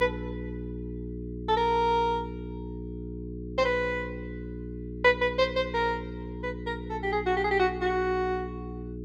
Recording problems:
hum; 60 Hz, harmonics up to 420 Hz, SNR 10 dB

